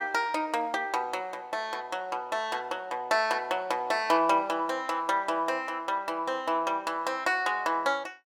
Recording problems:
none

